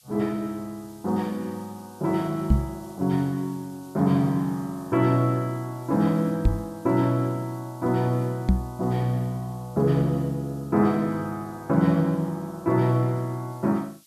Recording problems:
background hiss; SNR 27 dB
knock on the microphone; at 2.5 s, at 6.5 s and at 8.5 s; peak +9 dB vs average level

